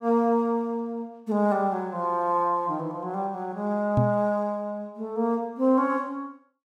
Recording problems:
microphone thump; at 4 s; peak +6 dB vs average level

